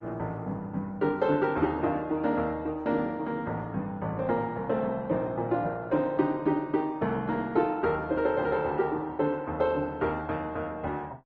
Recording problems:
lossy codec; Opus, then Opus, log-spectral distance 2 dB

